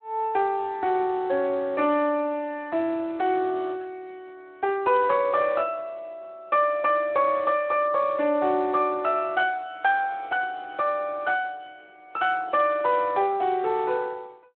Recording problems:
telephone audio; 240 Hz to 3.6 kHz, Speex

